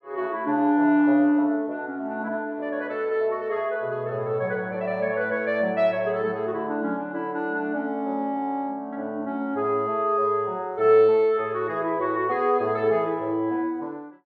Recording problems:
none

